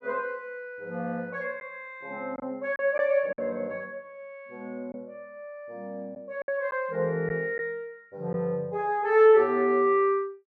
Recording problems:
packet loss; 3% of the sound replaced, filled with silence

